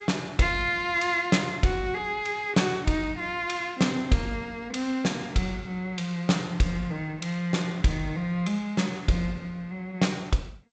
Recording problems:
lossy codec; G.722, log-spectral distance 2 dB, nothing above 7.6 kHz

